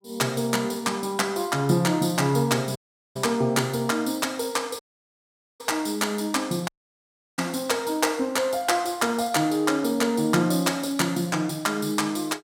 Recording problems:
dropout; at 3 s, at 5 s for 1 s and at 6.5 s for 0.5 s

